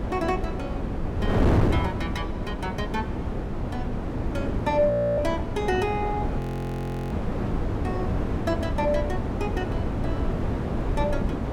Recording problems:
wind on the microphone; below 350 Hz, SNR -1 dB
audio freezing; at 5 s and at 6.5 s for 0.5 s

